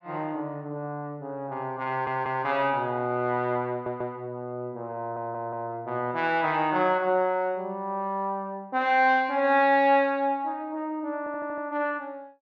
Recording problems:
stutter; 4 times, first at 2 s

